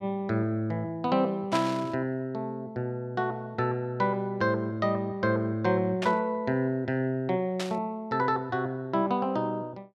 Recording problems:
burst of static; at 1.5 s, at 6 s and at 7.5 s; peak 0 dB vs average level

